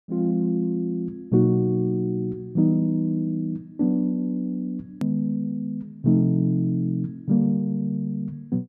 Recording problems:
click at an edit; at 5 s

